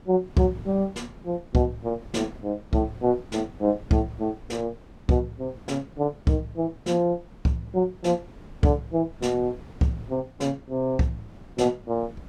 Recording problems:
wind on the microphone; below 330 Hz, SNR 21 dB

